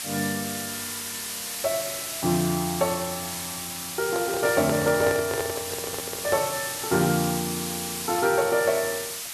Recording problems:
hiss; slope +2 dB per octave, SNR 4 dB
handling noise; from 4 to 6.5 s; peak +1 dB vs average level

